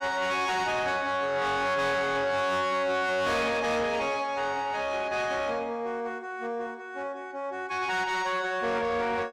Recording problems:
distortion; soft clipping, signal-to-distortion ratio 7 dB

